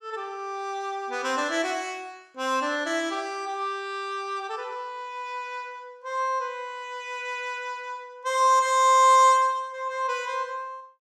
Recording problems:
none

